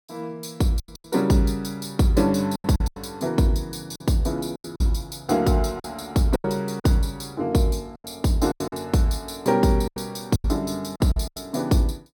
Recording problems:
lost packets; 10% of the sound replaced, filled with silence

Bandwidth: 17 kHz